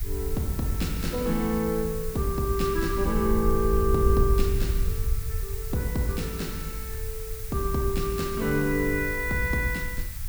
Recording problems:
hiss; SNR 11 dB
rumble; below 72 Hz, SNR 6 dB

